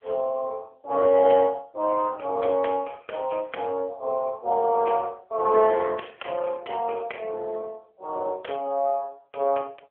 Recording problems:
phone line; 370 Hz to 3.3 kHz, AMR-NB

